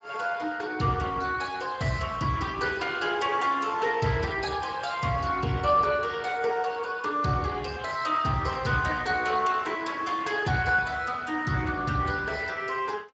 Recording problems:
lossy compression; Speex, log-spectral distance 4 dB, nothing above 7.6 kHz

